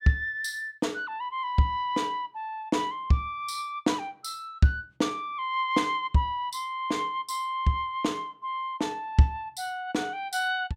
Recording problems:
none

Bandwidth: 16 kHz